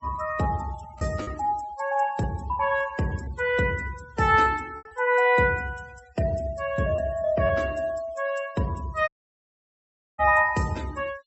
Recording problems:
low-pass filter; nothing above 8 kHz
denoising artefacts; signal-to-artefact ratio 22 dB
lost packets; 4% of the sound replaced, filled with repeated pitch periods
dropout; at 9 s for 1 s

